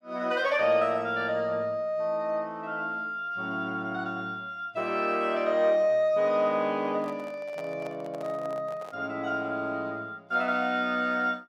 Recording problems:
microphone handling noise; from 7 to 9 s; peak -9 dB vs average level

